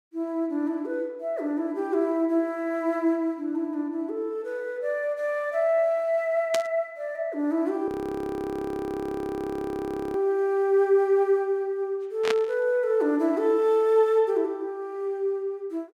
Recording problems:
static burst; at 6.5 s and at 12 s; peak +1 dB vs average level
frozen audio; at 8 s for 2.5 s

